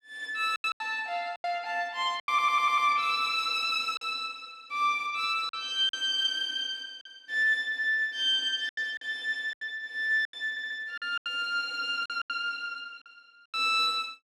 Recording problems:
packet loss; 9% of the sound replaced, filled with silence
stutter; at 2.5 s and at 11 s

